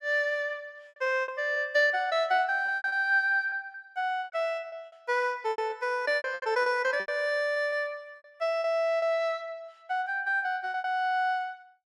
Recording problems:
lost packets; 12% of the sound replaced, filled with repeated pitch periods

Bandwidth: 15.5 kHz